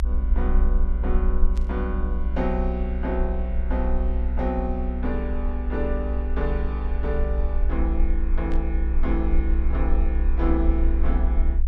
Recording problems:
rumble; below 60 Hz, SNR -4 dB
static burst; at 1.5 s and at 8.5 s; peak -11 dB vs average level

